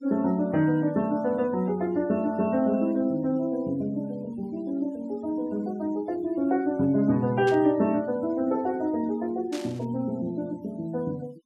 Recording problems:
noise reduction artefacts; signal-to-artefact ratio 24 dB
static burst; at 7.5 s and at 9.5 s; peak -9 dB vs average level

